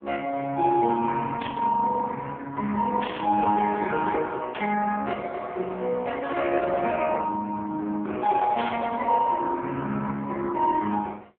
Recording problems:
telephone audio; 220 Hz to 3.4 kHz, AMR-NB
burst of static; 4 times, first at 1.5 s; peak -4 dB vs average level

